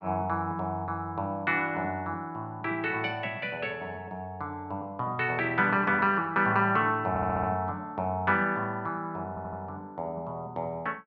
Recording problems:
stutter; at 7 s and at 9.5 s

